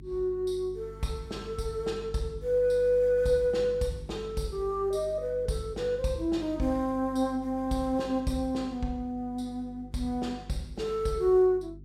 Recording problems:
hum; 50 Hz, harmonics up to 400 Hz, SNR 18 dB

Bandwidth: 16 kHz